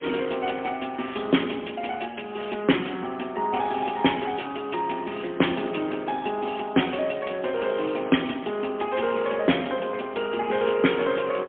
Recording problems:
telephone audio; 190 Hz to 3.4 kHz, AMR-NB, then MP3

